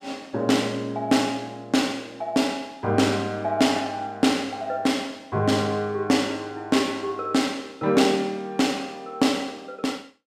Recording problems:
none

